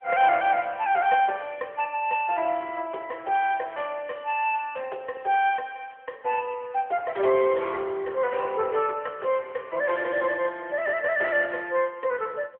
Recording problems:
phone line; 340 Hz to 3.3 kHz, AMR-NB

